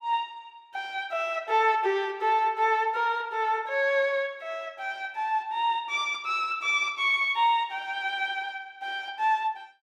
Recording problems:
none

